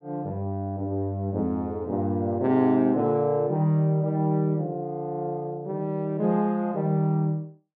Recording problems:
none

